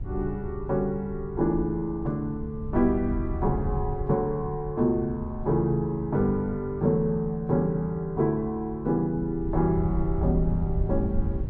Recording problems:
wind on the microphone; below 94 Hz, SNR 8 dB

